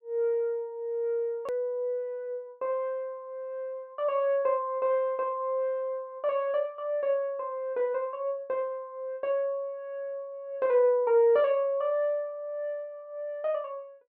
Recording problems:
edit click; at 1.5 s

